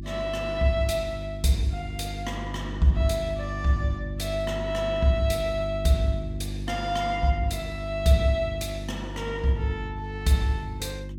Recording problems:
hum; 50 Hz, harmonics up to 350 Hz, SNR 8 dB

